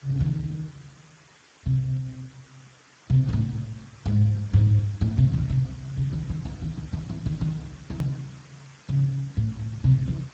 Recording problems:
lossy compression; Speex, log-spectral distance 7 dB, nothing above 17.7 kHz
hiss; SNR 26 dB
click at an edit; at 8 s

